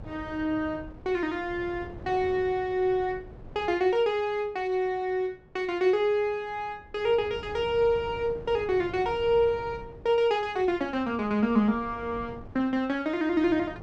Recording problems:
wind on the microphone; below 370 Hz, SNR 19 dB

